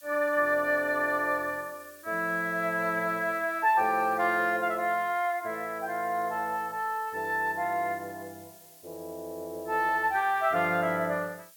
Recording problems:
hiss; slope +4 dB per octave, SNR 22 dB

